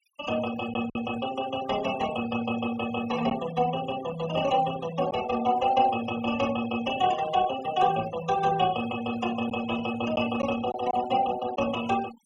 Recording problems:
denoising artefacts; signal-to-artefact ratio 15 dB
packet loss; 1.3% of the sound replaced, filled with silence

